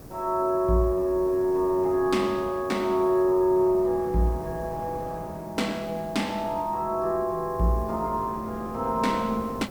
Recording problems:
hiss; SNR 27 dB
wind on the microphone; below 520 Hz, SNR 17 dB

